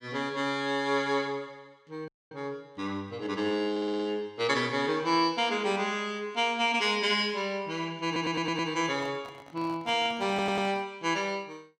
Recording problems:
dropout; at 2 s
audio stuttering; at 3.5 s, at 8 s and at 10 s
handling noise; from 9 to 11 s; peak -12 dB vs average level

